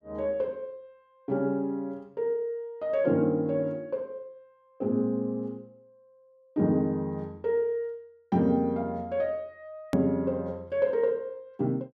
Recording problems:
edit click; at 10 s

